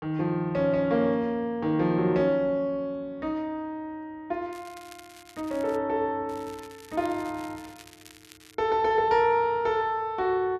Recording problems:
crackling; from 4.5 to 6 s and from 6.5 to 8.5 s; loose cable, SNR 23 dB

